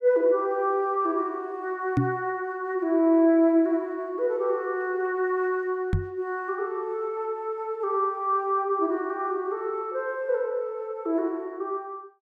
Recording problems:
knock on the microphone; at 2 s and at 6 s; peak +6 dB vs average level

